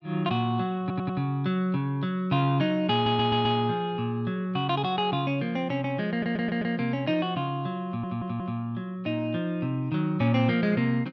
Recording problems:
stutter; 4 times, first at 1 s

